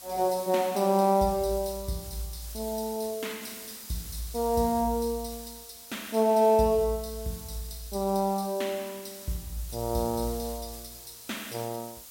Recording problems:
hiss; SNR 14 dB

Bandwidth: 16.5 kHz